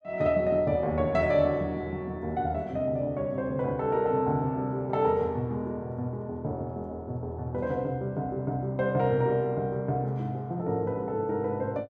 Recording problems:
none

